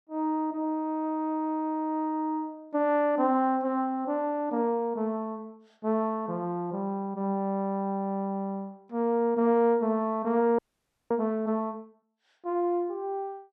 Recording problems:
frozen audio; at 11 s for 0.5 s

